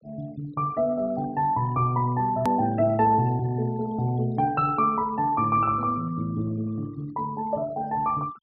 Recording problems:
treble cut off; nothing above 5.5 kHz
noise reduction artefacts; signal-to-artefact ratio 24 dB
hard cut with a click; at 2.5 s

